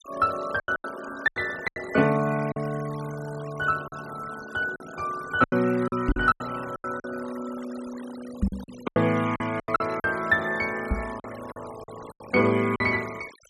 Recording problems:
denoising artefacts; signal-to-artefact ratio 17 dB
packet loss; 11% of the sound replaced, filled with silence
knock on the microphone; at 6 s, at 8.5 s and at 11 s; peak +6 dB vs average level

